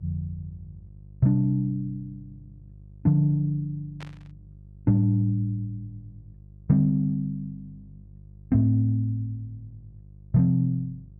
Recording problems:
hum; 50 Hz, harmonics up to 350 Hz, SNR 23 dB
burst of static; at 4 s; peak -14 dB vs average level

